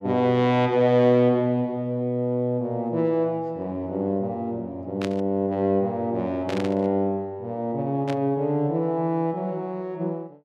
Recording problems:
burst of static; at 5 s, at 6.5 s and at 8 s; peak -6 dB vs average level

